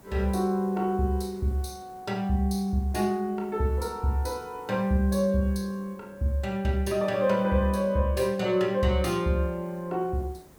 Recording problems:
hiss; SNR 27 dB

